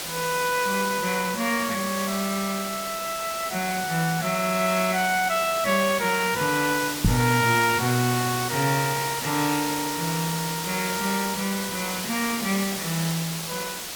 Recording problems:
background hiss; slope -1 dB per octave, SNR 5 dB
microphone bump; at 7 s; peak +8 dB vs average level

